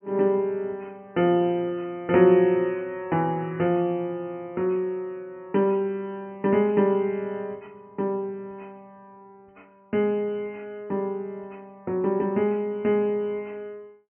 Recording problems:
low-pass filter; nothing above 3.1 kHz

